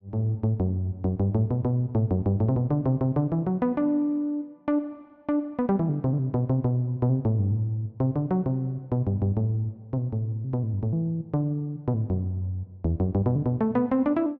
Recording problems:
none

